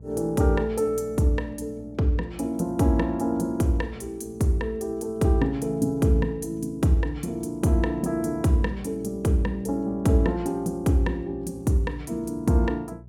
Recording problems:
hum; 60 Hz, harmonics up to 420 Hz, SNR 21 dB

